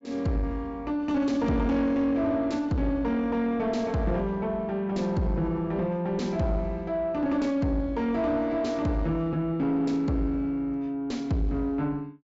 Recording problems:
low-pass filter; nothing above 8 kHz
distortion; soft clipping, signal-to-distortion ratio 10 dB

